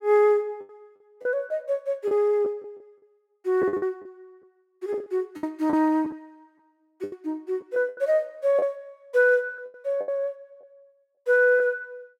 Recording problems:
packet loss; 11% of the sound replaced, filled with the last packet

